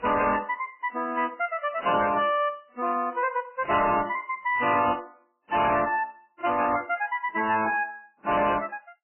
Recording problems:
lossy compression; MP3, then AAC, log-spectral distance 4 dB, nothing above 2.9 kHz
distortion; hard clipping, signal-to-distortion ratio 10 dB

